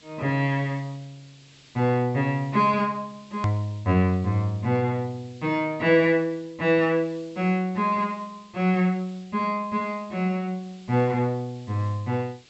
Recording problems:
treble cut off; nothing above 7.9 kHz
background hiss; SNR 28 dB
hard cut with a click; at 3.5 s

